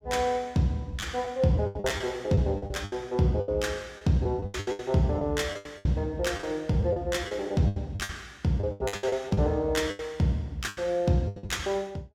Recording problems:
lost packets; 15% of the sound replaced, filled with the last packet

